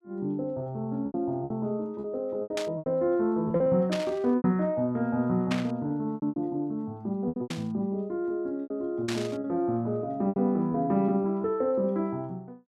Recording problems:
lost packets; 9% of the sound replaced, filled with repeated pitch periods
burst of static; 5 times, first at 2.5 s; peak 0 dB vs average level

